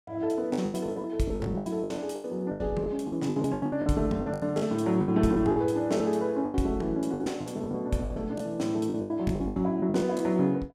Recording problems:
lost packets; 18% of the sound replaced, filled with the last packet

